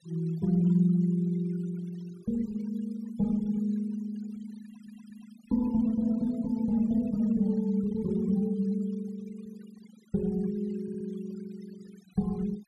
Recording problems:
denoising artefacts; signal-to-artefact ratio 25 dB
stutter; at 4.5 s and at 11 s

